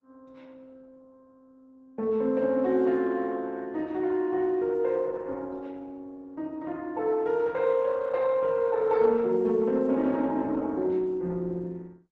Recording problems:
lossy compression; Opus, log-spectral distance 2 dB

